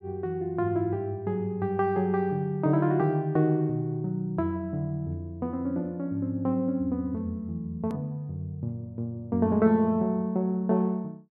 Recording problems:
hard cut with a click; at 8 s

